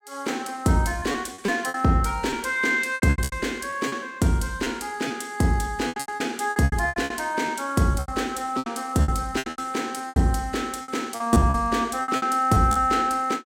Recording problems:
lost packets; 15% of the sound replaced, filled with repeated pitch periods

